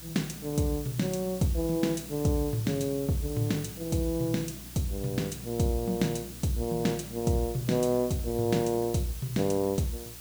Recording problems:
hum; 60 Hz, harmonics up to 360 Hz, SNR 20 dB
background hiss; slope +1 dB per octave, SNR 13 dB

